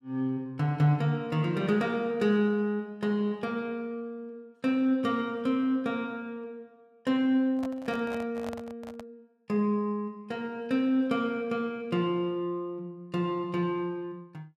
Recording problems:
microphone handling noise; from 7.5 to 9 s; peak -7 dB vs average level

